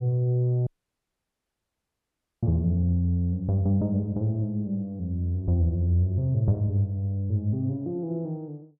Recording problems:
audio cutting out; at 0.5 s for 2 s

